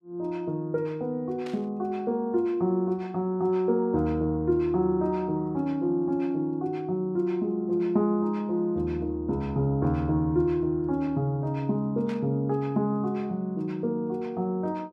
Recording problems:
static burst; at 1.5 s and at 12 s; peak -12 dB vs average level

